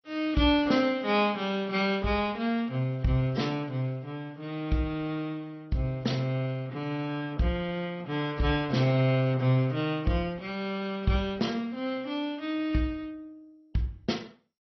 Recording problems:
lossy compression; AAC, then MP2, log-spectral distance 2 dB, nothing above 5.8 kHz

